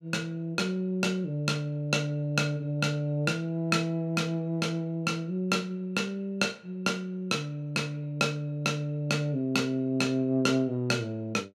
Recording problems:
none

